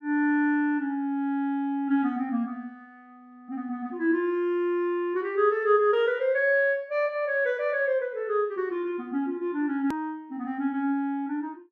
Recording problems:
hard cut with a click; at 10 s

